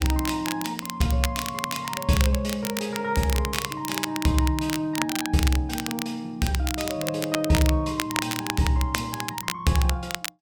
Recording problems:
crackling; vinyl, SNR 5 dB

